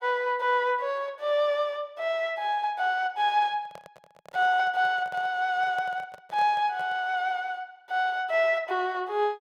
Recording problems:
handling noise; from 3.5 to 7 s; peak -11 dB vs average level

